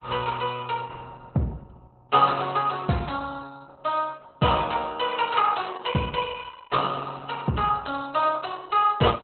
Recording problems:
codec artefacts; Opus, log-spectral distance 5 dB, nothing above 4.1 kHz

